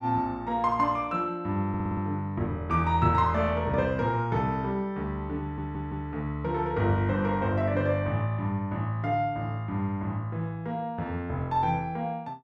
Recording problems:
stutter; at 1.5 s and at 5.5 s

